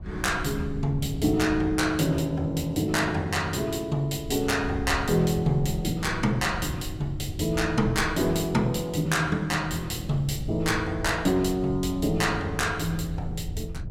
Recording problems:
wind noise; below 120 Hz, SNR 12 dB

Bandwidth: 16.5 kHz